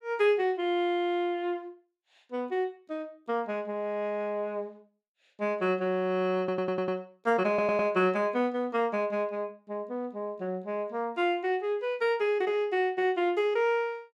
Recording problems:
stutter; at 6.5 s and at 7.5 s

